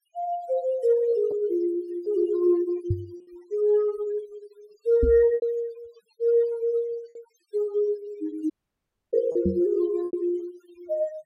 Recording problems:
noise reduction artefacts; signal-to-artefact ratio 22 dB
packet loss; 4% of the sound replaced, filled with repeated pitch periods
knock on the microphone; at 3 s, at 5 s and at 9.5 s; peak +3 dB vs average level
audio cutting out; at 8.5 s for 0.5 s

